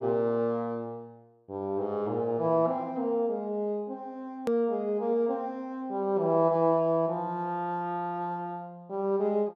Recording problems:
hard cut with a click; at 4.5 s

